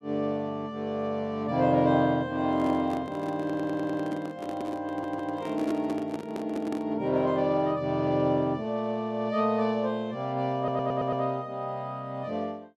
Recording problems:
handling noise; from 2.5 to 7 s; peak -1 dB vs average level
stutter; at 3.5 s, at 5 s and at 11 s

